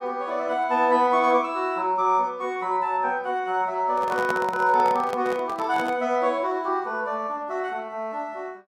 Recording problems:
microphone handling noise; from 4 to 6 s; peak -2 dB vs average level

